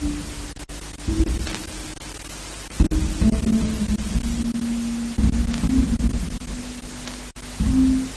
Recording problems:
codec artefacts; MP3, then Opus, log-spectral distance 14 dB
hum; 50 Hz, harmonics up to 550 Hz, SNR 19 dB
background hiss; slope -2 dB per octave, SNR 12 dB
lost packets; 8% of the sound replaced, filled with silence
static burst; at 1.5 s, at 5.5 s and at 7 s; peak -3 dB vs average level

